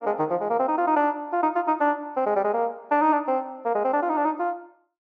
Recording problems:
treble missing; nothing above 6.9 kHz

